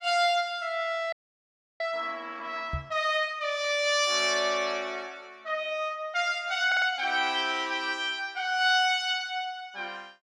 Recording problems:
audio freezing; at 1 s for 0.5 s
microphone bump; at 2.5 s; peak -2 dB vs average level
stutter; at 6.5 s

